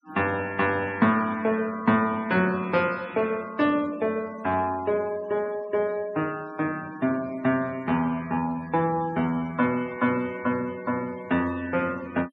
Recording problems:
noise reduction artefacts; signal-to-artefact ratio 20 dB

